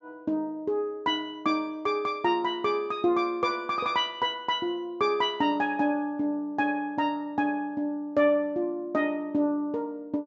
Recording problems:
treble missing; nothing above 8 kHz

